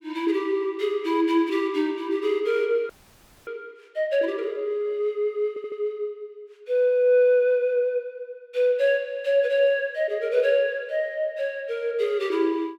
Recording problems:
audio freezing; at 3 s for 0.5 s
stutter; at 5.5 s

